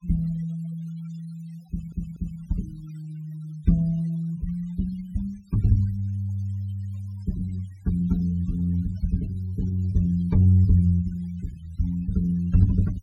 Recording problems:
denoising artefacts; signal-to-artefact ratio 27 dB
audio stuttering; at 1.5 s

